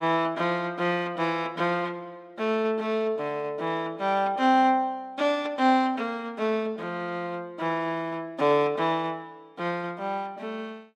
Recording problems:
none

